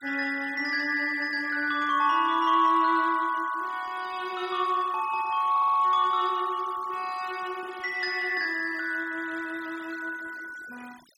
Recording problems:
denoising artefacts; signal-to-artefact ratio 22 dB
stutter; at 5.5 s

